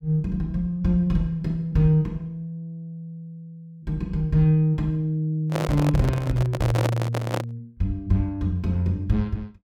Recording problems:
handling noise; from 5.5 to 7.5 s; peak +2 dB vs average level

